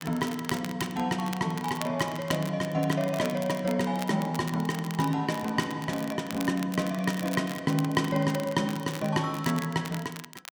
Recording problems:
crackle; vinyl, SNR 13 dB

